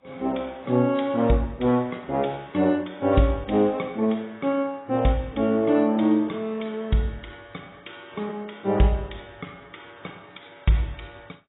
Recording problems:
codec artefacts; AAC, log-spectral distance 4 dB, nothing above 3.8 kHz

